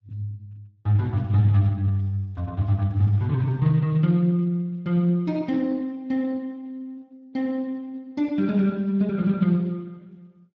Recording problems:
codec artefacts; Speex, log-spectral distance 2 dB

